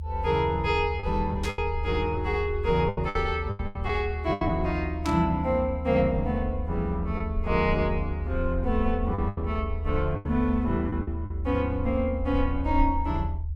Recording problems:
rumble; below 78 Hz, SNR 5 dB
packet loss; 6% of the sound replaced, filled with the last packet
burst of static; at 1.5 s and at 5 s; peak -4 dB vs average level

